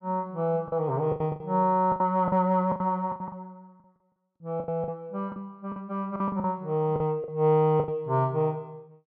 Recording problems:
lost packets; 12% of the sound replaced, filled with the last packet

